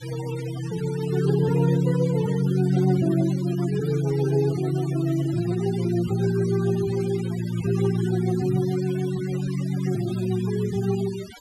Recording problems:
noise reduction artefacts; signal-to-artefact ratio 17 dB

